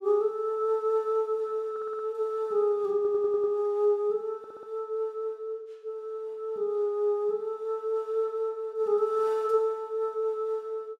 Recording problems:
audio stuttering; at 1.5 s, at 3 s and at 4.5 s

